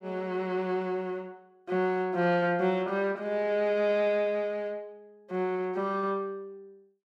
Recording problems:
none

